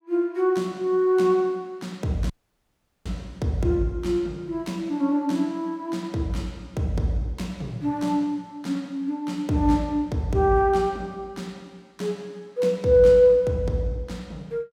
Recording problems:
audio cutting out; at 2.5 s for 1 s

